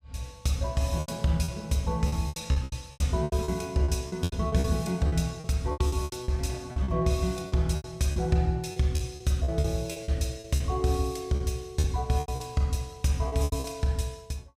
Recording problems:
lost packets; 14% of the sound replaced, filled with repeated pitch periods

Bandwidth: 15.5 kHz